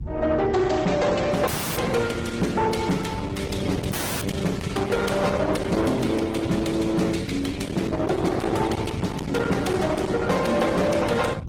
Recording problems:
lossy compression; Opus, then Opus, log-spectral distance 4 dB, nothing above 18.9 kHz
distorted audio; soft clipping, signal-to-distortion ratio 8 dB
low-frequency rumble; below 390 Hz, SNR 7 dB
dropout; at 1.5 s and at 4 s

